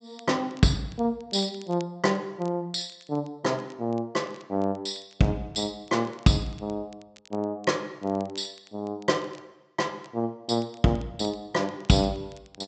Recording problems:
treble missing; nothing above 8 kHz
crackle; vinyl, SNR 27 dB

